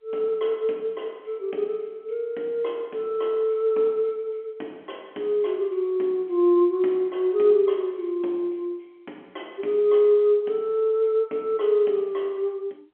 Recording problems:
phone line; 260 Hz to 3.7 kHz, G.711

